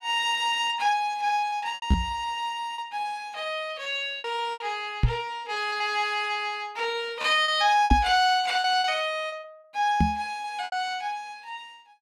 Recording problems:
lost packets; 7% of the sound replaced, filled with repeated pitch periods
microphone bump; 4 times, first at 2 s; peak +8 dB vs average level

